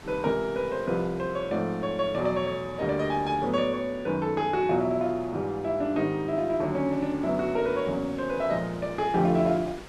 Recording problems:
wind noise; below 2.1 kHz, SNR 21 dB

